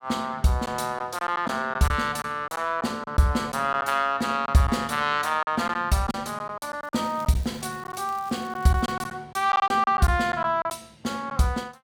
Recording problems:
packet loss; 7% of the sound replaced, filled with silence
crackling; from 7 to 9 s; loose cable, SNR 25 dB

